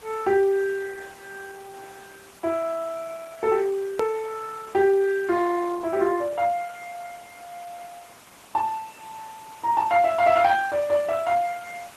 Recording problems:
lossy compression; Opus, log-spectral distance 5 dB, nothing above 13.1 kHz
hiss; slope -3 dB per octave, SNR 24 dB
edit click; at 4 s

